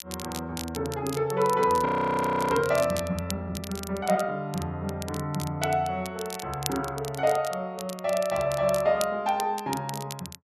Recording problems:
crackle; vinyl, SNR 13 dB
frozen audio; at 2 s for 0.5 s

